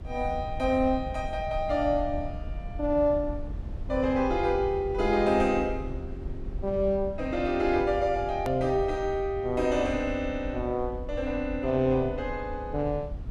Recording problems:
rumble; below 88 Hz, SNR 11 dB
hard cut with a click; at 8.5 s

